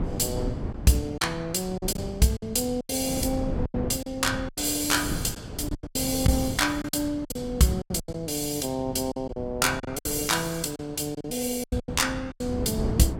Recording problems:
wind on the microphone; below 270 Hz, SNR 9 dB
lost packets; 11% of the sound replaced, filled with silence

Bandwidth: 16.5 kHz